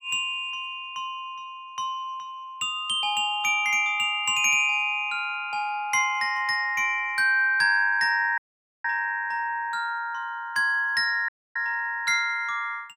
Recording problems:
audio cutting out; at 8.5 s and at 11 s

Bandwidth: 16 kHz